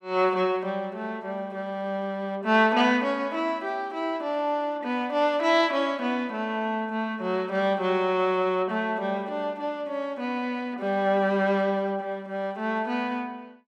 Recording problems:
none

